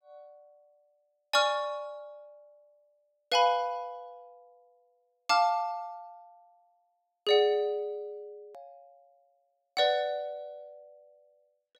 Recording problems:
hard cut with a click; at 8.5 s

